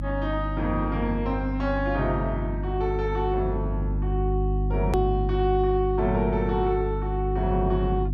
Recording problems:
mains hum; 50 Hz, harmonics up to 300 Hz, SNR 2 dB
click at an edit; at 5 s

